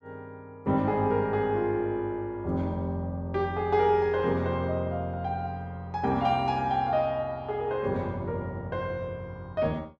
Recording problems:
none

